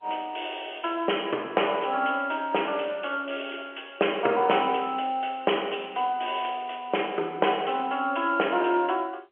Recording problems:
phone line; 280 Hz to 3.2 kHz, G.711

